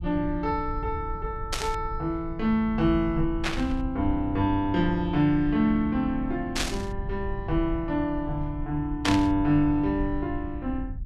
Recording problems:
low-frequency rumble; below 78 Hz, SNR 10 dB
static burst; 4 times, first at 1.5 s; peak +4 dB vs average level

